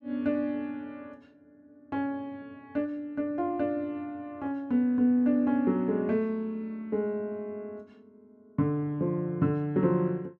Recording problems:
none

